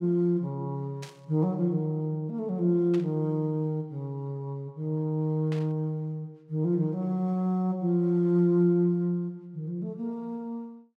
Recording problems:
burst of static; at 1 s, at 3 s and at 5.5 s; peak -11 dB vs average level

